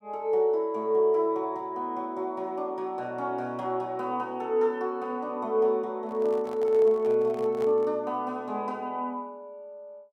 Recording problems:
microphone handling noise; from 6 to 8 s; peak -10 dB vs average level

